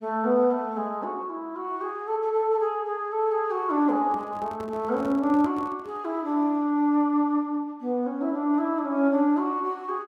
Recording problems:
handling noise; from 4 to 6 s; peak -10 dB vs average level

